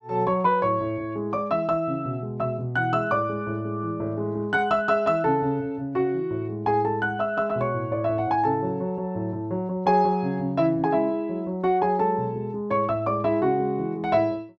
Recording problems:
none

